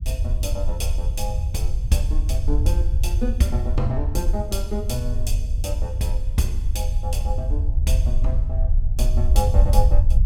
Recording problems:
low-frequency rumble; below 66 Hz, SNR -5 dB

